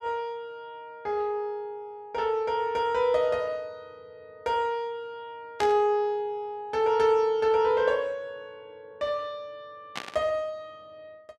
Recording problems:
burst of static; at 5.5 s and at 10 s; peak -2 dB vs average level

